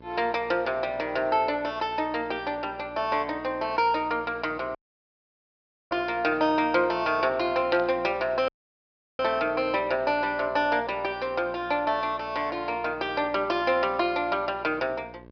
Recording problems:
treble missing; nothing above 5.5 kHz
electrical hum; 60 Hz, harmonics up to 1.7 kHz, SNR 23 dB
audio cutting out; at 5 s for 1 s and at 8.5 s for 0.5 s
static burst; at 7.5 s; peak -6 dB vs average level

